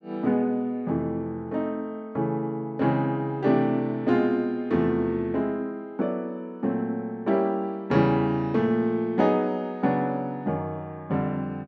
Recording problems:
none

